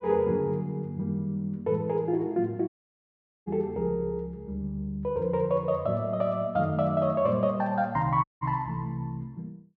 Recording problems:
audio cutting out; at 2.5 s for 1 s and at 8 s

